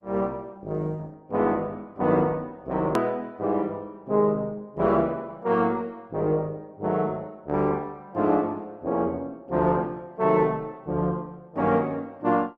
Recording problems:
lossy codec; Opus, log-spectral distance 2 dB, nothing above 13.1 kHz
hard cut with a click; at 3 s

